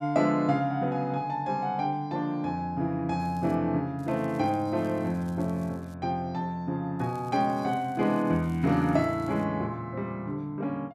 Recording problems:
crackle; at 3 s, from 4 to 6 s and from 7 to 9.5 s; loose cable, SNR 30 dB

